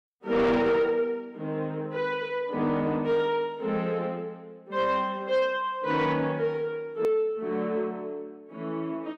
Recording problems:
distorted audio; soft clipping, signal-to-distortion ratio 11 dB
hard cut with a click; at 7 s

